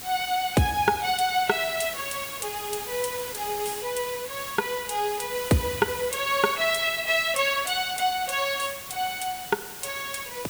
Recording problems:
hiss; slope -1 dB per octave, SNR 9 dB

